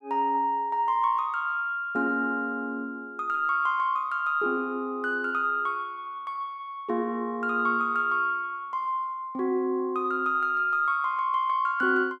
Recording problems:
none

